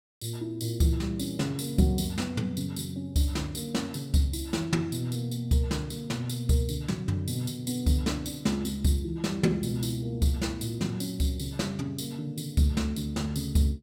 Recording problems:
none

